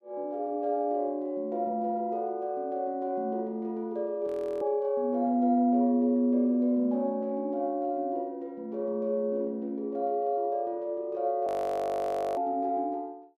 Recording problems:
audio freezing; at 4.5 s and at 11 s for 1 s

